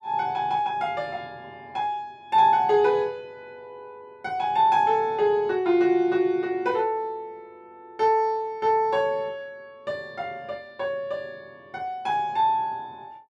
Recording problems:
none

